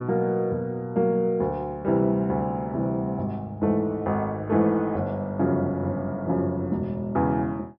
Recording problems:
treble cut off; nothing above 5.5 kHz

